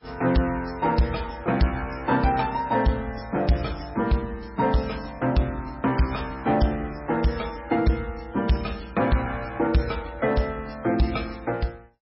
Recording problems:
lossy codec; MP3, log-spectral distance 5 dB, nothing above 5.5 kHz
distorted audio; soft clipping, signal-to-distortion ratio 11 dB

